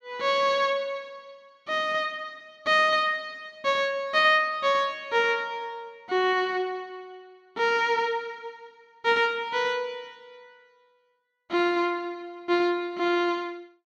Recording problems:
none

